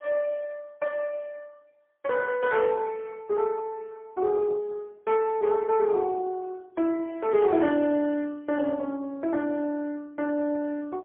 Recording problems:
telephone audio; 130 Hz to 3.5 kHz, AMR-NB, then MP3

